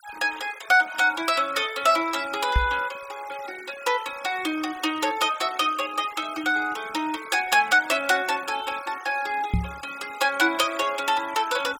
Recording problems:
noise reduction artefacts; signal-to-artefact ratio 18 dB
knock on the microphone; at 2.5 s and at 9.5 s; peak +4 dB vs average level

